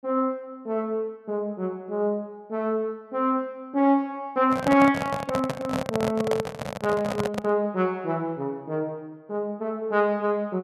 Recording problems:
microphone handling noise; from 4.5 to 7.5 s; peak +3 dB vs average level

